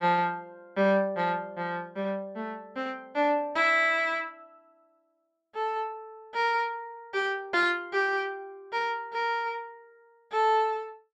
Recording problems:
none

